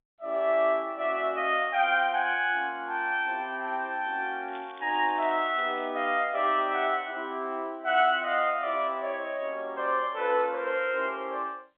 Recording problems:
telephone audio; 240 Hz to 3.6 kHz, G.711
crackling; from 4.5 to 6 s; loose cable, SNR 26 dB

